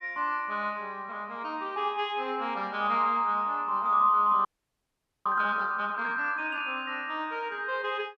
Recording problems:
frozen audio; at 4.5 s for 1 s

